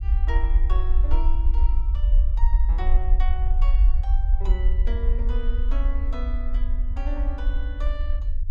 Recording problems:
low-frequency rumble; below 50 Hz, SNR -14 dB

